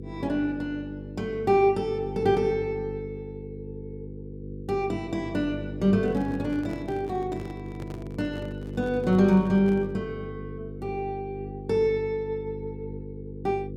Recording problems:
electrical hum; 50 Hz, harmonics up to 500 Hz, SNR 11 dB
handling noise; from 6 to 10 s; peak -10 dB vs average level

